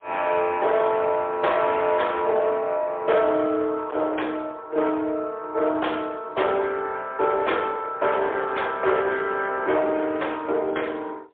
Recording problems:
telephone audio; 340 Hz to 3.5 kHz, AMR-NB, then MP3
distortion; hard clipping, signal-to-distortion ratio 13 dB

